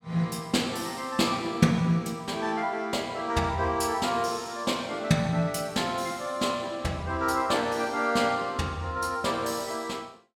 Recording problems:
none

